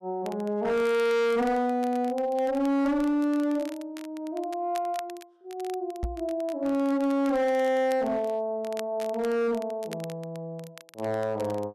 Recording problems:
distorted audio; hard clipping, signal-to-distortion ratio 7 dB
crackling; vinyl, SNR 22 dB
microphone thump; at 6 s; peak 0 dB vs average level

